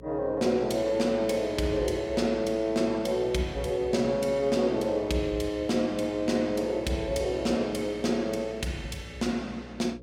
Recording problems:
hum; 60 Hz, harmonics up to 540 Hz, SNR 19 dB

